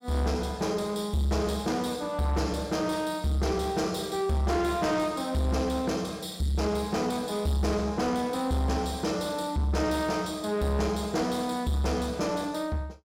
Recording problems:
distorted audio; soft clipping, signal-to-distortion ratio 11 dB

